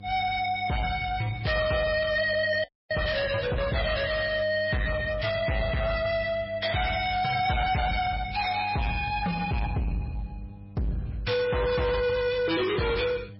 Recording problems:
lossy codec; MP3, log-spectral distance 4 dB, nothing above 5.2 kHz
distorted audio; soft clipping, signal-to-distortion ratio 6 dB
electrical hum; 50 Hz, harmonics up to 800 Hz, SNR 18 dB
audio freezing; at 2.5 s

